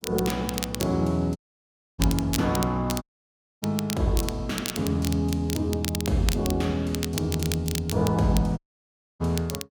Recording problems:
crackling; vinyl, SNR 8 dB
audio cutting out; at 1.5 s for 0.5 s, at 3 s for 0.5 s and at 8.5 s for 0.5 s

